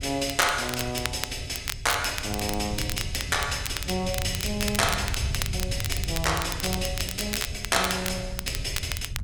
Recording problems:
wind noise; below 110 Hz, SNR 8 dB
crackle; vinyl, SNR 6 dB

